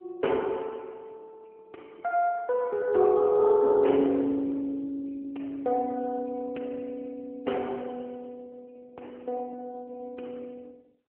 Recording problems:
telephone audio; 260 Hz to 3.2 kHz, AMR-NB

